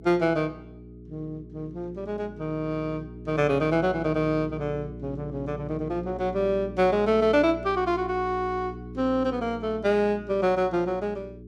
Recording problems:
hum; 60 Hz, harmonics up to 420 Hz, SNR 14 dB

